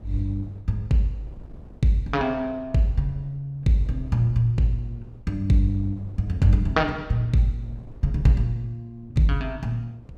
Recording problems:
wind noise; below 150 Hz, SNR 23 dB

